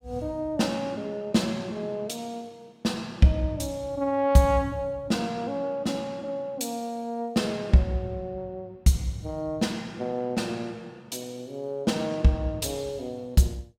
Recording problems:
none

